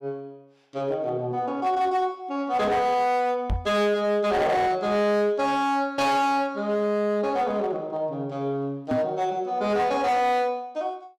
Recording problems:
distorted audio; hard clipping, signal-to-distortion ratio 11 dB
knock on the microphone; at 3.5 s and at 9 s; peak +2 dB vs average level

